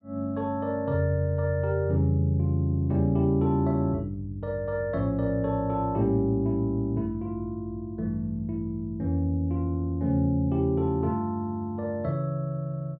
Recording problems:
none

